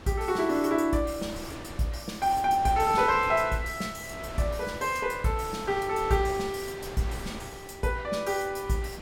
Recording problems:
wind on the microphone; below 1.4 kHz, SNR 14 dB

